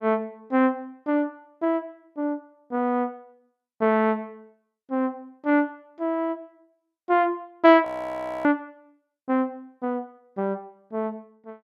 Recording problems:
audio freezing; at 8 s for 0.5 s

